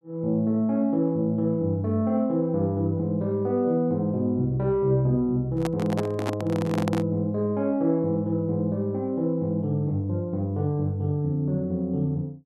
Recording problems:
microphone handling noise; from 5.5 to 7 s; peak -1 dB vs average level

